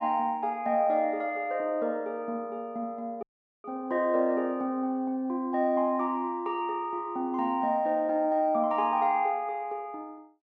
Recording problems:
dropout; at 3 s

